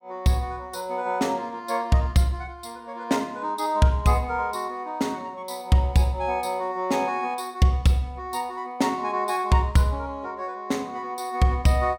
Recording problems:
none

